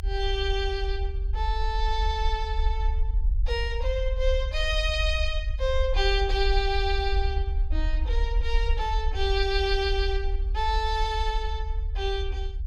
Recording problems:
low-frequency rumble; below 60 Hz, SNR 1 dB

